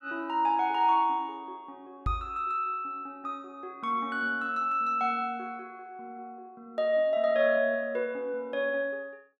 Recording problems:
microphone bump; at 2 s; peak 0 dB vs average level

